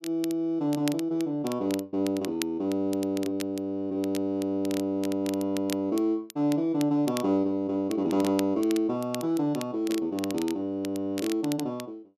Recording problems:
crackle; vinyl, SNR 15 dB

